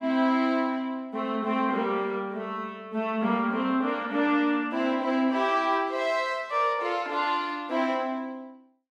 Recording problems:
none

